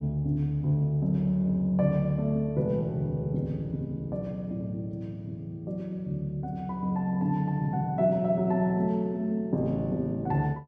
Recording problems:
none

